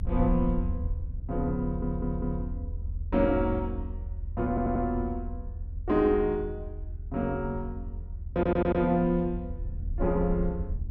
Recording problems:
rumble; below 80 Hz, strongest tone 36 Hz, SNR 7 dB
stutter; at 1.5 s, at 4.5 s and at 8.5 s

